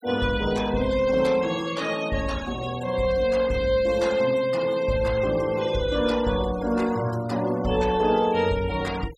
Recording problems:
noise reduction artefacts; signal-to-artefact ratio 18 dB

